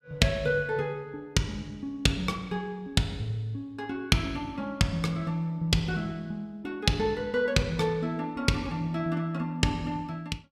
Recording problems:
none

